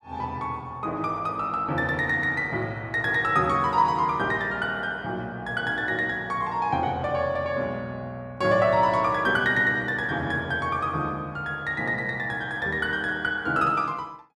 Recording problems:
none

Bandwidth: 13 kHz